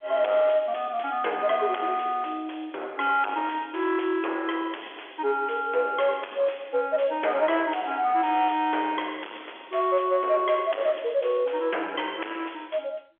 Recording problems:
phone line; 320 Hz to 3.4 kHz, G.711
distorted audio; soft clipping, signal-to-distortion ratio 9 dB

